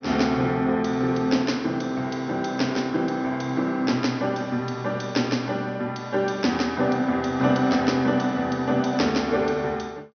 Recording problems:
treble missing; nothing above 6.2 kHz

